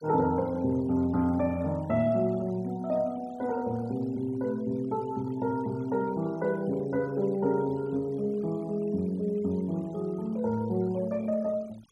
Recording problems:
noise reduction artefacts; signal-to-artefact ratio 25 dB

